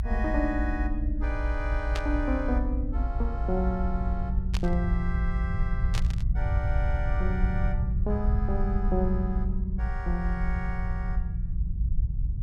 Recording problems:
rumble; below 70 Hz, SNR -3 dB
static burst; at 2 s, at 4.5 s and at 6 s; peak +2 dB vs average level

